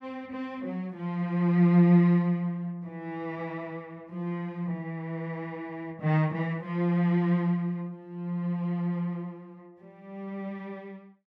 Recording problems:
none

